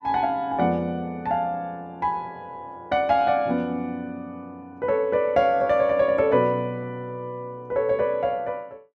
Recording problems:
none

